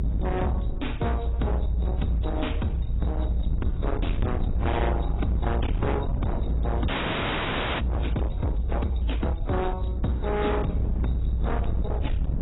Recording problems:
lossy codec; AAC, then AAC, log-spectral distance 4 dB, nothing above 3.9 kHz
distorted audio; hard clipping, signal-to-distortion ratio 7 dB
low-frequency rumble; below 82 Hz, strongest tone 58 Hz, SNR -1 dB
wind on the microphone; below 240 Hz, SNR 7 dB
frozen audio; at 7 s for 1 s

